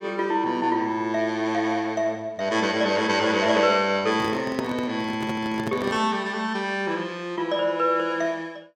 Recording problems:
handling noise; from 4 to 6 s; peak -2 dB vs average level

